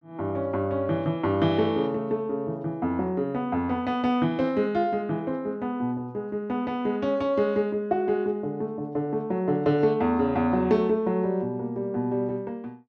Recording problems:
none

